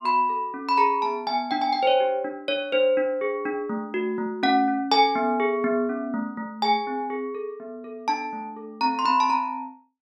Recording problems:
none

